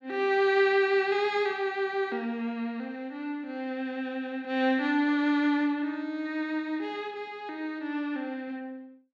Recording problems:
none

